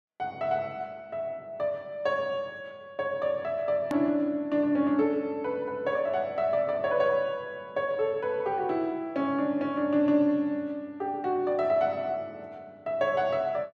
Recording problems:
edit click; at 4 s

